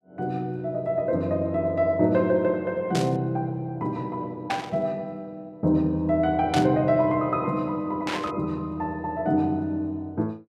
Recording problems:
burst of static; 4 times, first at 3 s; peak -1 dB vs average level

